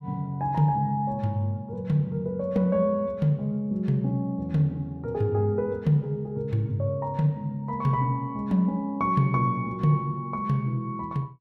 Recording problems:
none

